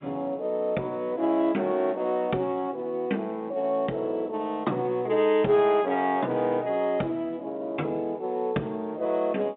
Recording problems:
telephone audio; 150 Hz to 3.7 kHz, G.711

